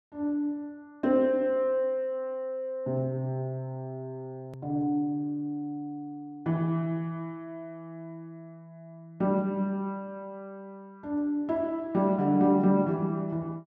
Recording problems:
click at an edit; at 4.5 s

